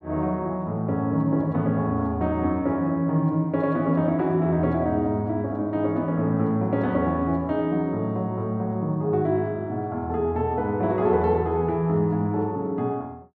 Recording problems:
none

